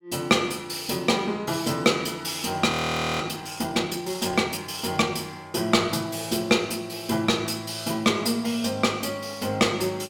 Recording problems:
frozen audio; at 2.5 s

